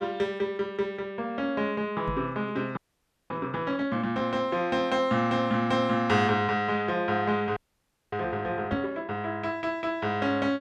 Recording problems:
knock on the microphone; at 2 s and at 8.5 s; peak -2 dB vs average level
audio freezing; at 3 s for 0.5 s and at 7.5 s for 0.5 s

